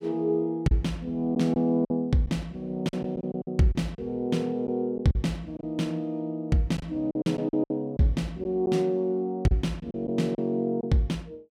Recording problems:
lost packets; 7% of the sound replaced, filled with silence

